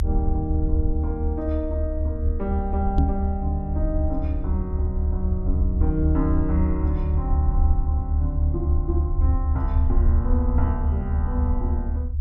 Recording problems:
rumble; below 76 Hz, SNR -5 dB
microphone thump; at 3 s; peak +7 dB vs average level

